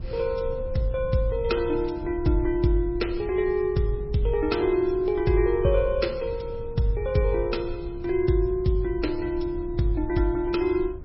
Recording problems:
lossy codec; MP3, log-spectral distance 2 dB, nothing above 5.5 kHz
rumble; below 92 Hz, SNR 13 dB

